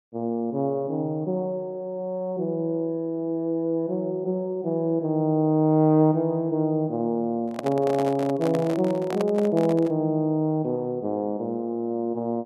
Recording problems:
handling noise; from 7.5 to 10 s; peak -1 dB vs average level

